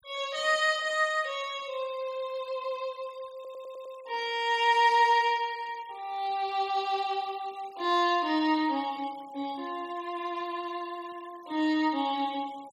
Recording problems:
noise reduction artefacts; signal-to-artefact ratio 24 dB
audio stuttering; at 3.5 s

